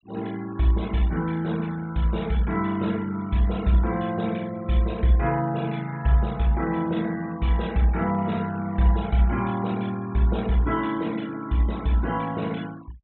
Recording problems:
treble missing; nothing above 3.8 kHz
denoising artefacts; signal-to-artefact ratio 21 dB

